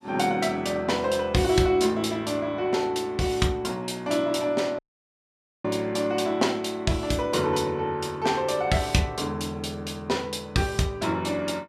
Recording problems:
audio cutting out; at 5 s for 1 s

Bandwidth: 14.5 kHz